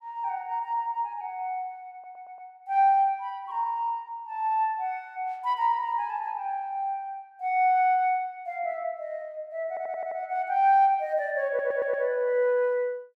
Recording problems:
audio stuttering; at 2 s, at 9.5 s and at 11 s

